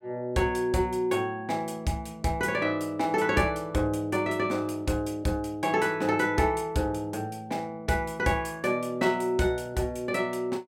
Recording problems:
none

